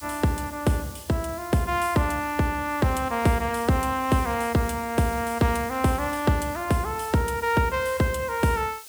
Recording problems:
hiss; slope +2 dB per octave, SNR 17 dB

